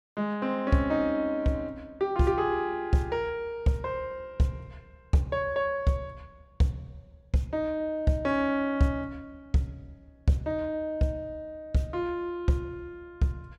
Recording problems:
none

